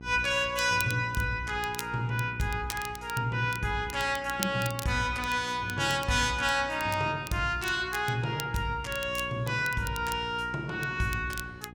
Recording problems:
mains hum; 60 Hz, harmonics up to 900 Hz, SNR 17 dB
crackling; vinyl, SNR 14 dB

